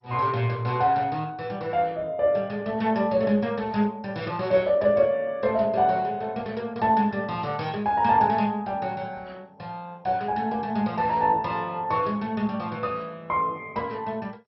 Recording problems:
lossy compression; MP2, log-spectral distance 2 dB, nothing above 5.5 kHz

